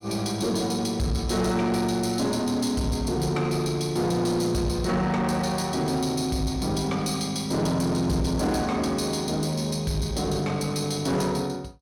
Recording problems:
distorted audio; soft clipping, signal-to-distortion ratio 10 dB

